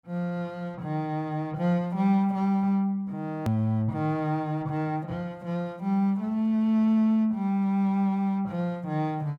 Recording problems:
edit click; at 3.5 s

